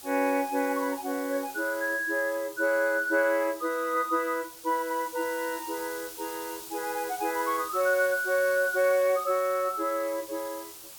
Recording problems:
hiss; SNR 14 dB

